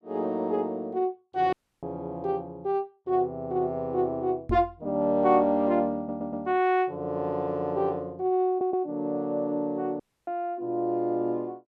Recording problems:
dropout; at 1.5 s and at 10 s
microphone thump; at 4.5 s; peak 0 dB vs average level
audio stuttering; at 6 s and at 8.5 s

